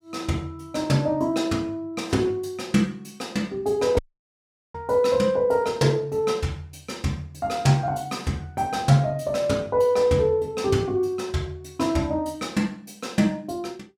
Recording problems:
audio cutting out; at 4 s for 1 s

